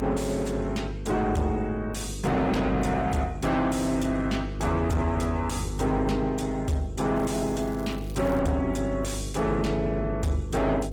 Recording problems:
lossy compression; Opus, log-spectral distance 3 dB, nothing above 19.5 kHz
distorted audio; soft clipping, signal-to-distortion ratio 7 dB
hum; 50 Hz, harmonics up to 500 Hz, SNR 8 dB
crackling; from 7 to 8.5 s; loose cable, SNR 26 dB

